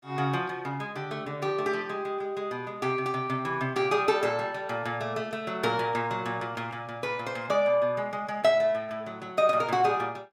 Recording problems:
none

